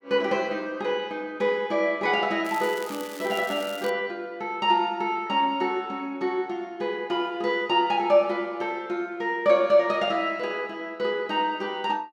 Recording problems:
crackling; from 2.5 to 4 s; loose cable, SNR 17 dB

